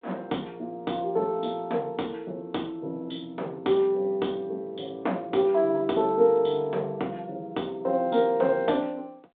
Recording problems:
telephone audio; 280 Hz to 3.6 kHz, G.726

